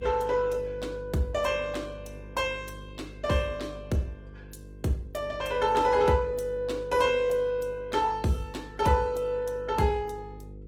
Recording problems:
lossy compression; Opus, log-spectral distance 3 dB, nothing above 19.5 kHz
hum; 50 Hz, harmonics up to 500 Hz, SNR 17 dB

